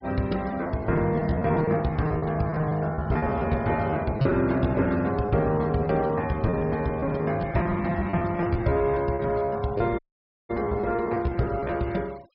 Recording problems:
treble missing; nothing above 5.3 kHz
noise reduction artefacts; signal-to-artefact ratio 26 dB
lost packets; 16% of the sound replaced, filled with repeated pitch periods
audio cutting out; at 10 s for 0.5 s

